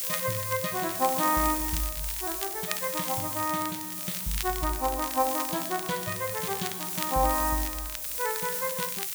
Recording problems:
background hiss; SNR 1 dB
crackle; vinyl, SNR 9 dB

